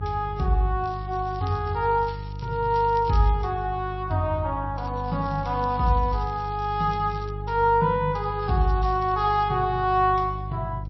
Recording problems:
lossy codec; MP3, log-spectral distance 3 dB, nothing above 5.5 kHz
electrical hum; 50 Hz, harmonics up to 350 Hz, SNR 10 dB
crackle; from 1 to 3.5 s, from 5 to 7.5 s and from 8 to 9.5 s; loose cable, SNR 26 dB

